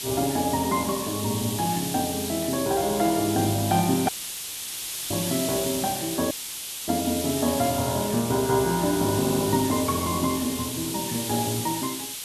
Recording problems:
background hiss; SNR 5 dB
dropout; at 4 s for 1 s and at 6.5 s for 0.5 s
audio stuttering; at 9 s

